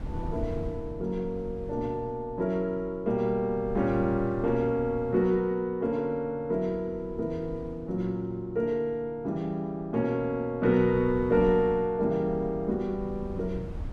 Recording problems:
wind noise; below 140 Hz, SNR 14 dB

